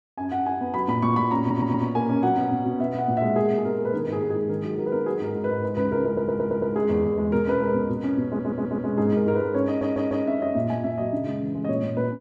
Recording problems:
stutter; 4 times, first at 1.5 s

